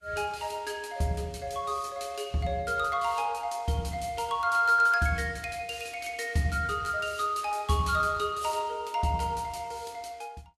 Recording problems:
lossy codec; Vorbis, log-spectral distance 3 dB, nothing above 12.7 kHz

